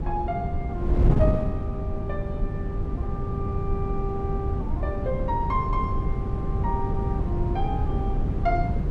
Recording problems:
wind on the microphone; below 150 Hz, SNR -4 dB

